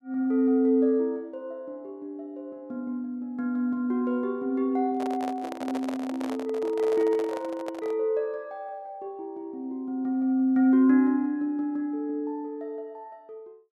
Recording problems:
handling noise; from 5 to 8 s; peak -5 dB vs average level

